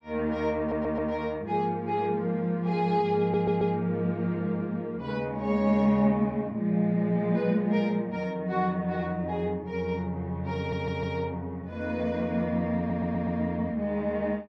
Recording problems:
stutter; 4 times, first at 0.5 s

